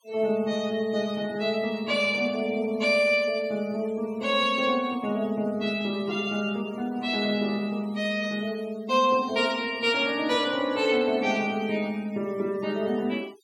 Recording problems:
denoising artefacts; signal-to-artefact ratio 23 dB

